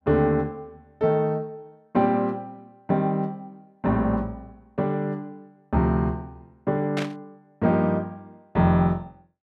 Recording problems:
burst of static; at 7 s; peak -3 dB vs average level

